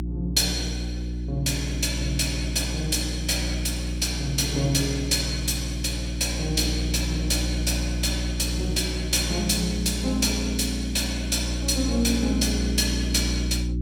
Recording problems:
electrical hum; 60 Hz, harmonics up to 360 Hz, SNR 4 dB

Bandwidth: 17 kHz